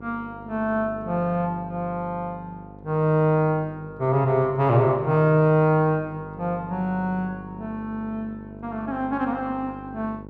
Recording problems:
hum; 50 Hz, harmonics up to 1.1 kHz, SNR 17 dB

